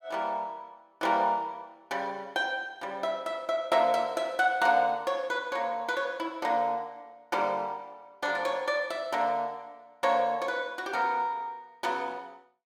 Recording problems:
none

